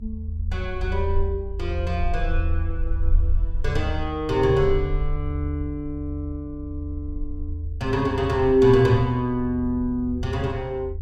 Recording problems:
rumble; below 80 Hz, SNR 6 dB

